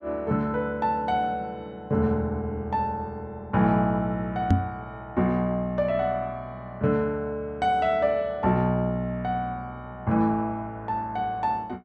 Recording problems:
microphone bump; at 4.5 s; peak +9 dB vs average level

